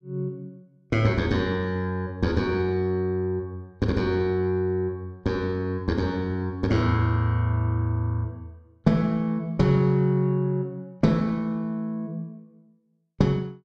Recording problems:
none

